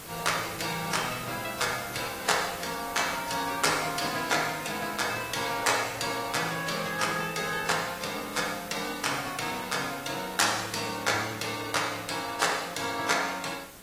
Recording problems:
lossy compression; AAC, log-spectral distance 10 dB, nothing above 14.7 kHz
background hiss; slope -3 dB per octave, SNR 13 dB

